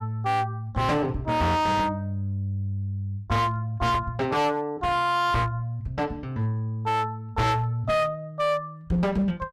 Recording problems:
distorted audio; hard clipping, uneven, signal-to-distortion ratio 7 dB

